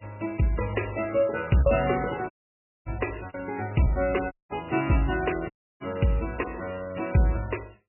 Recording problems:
codec artefacts; MP3, log-spectral distance 8 dB, nothing above 2.8 kHz
lost packets; 2% of the sound replaced, filled with repeated pitch periods
dropout; at 2.5 s for 0.5 s, at 4.5 s and at 5.5 s

